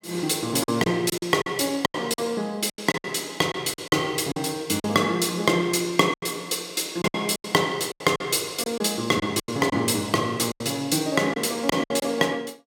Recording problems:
lost packets; 11% of the sound replaced, filled with silence

